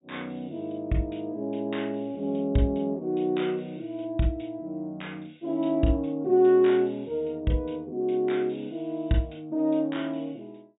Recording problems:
treble cut off; nothing above 4 kHz

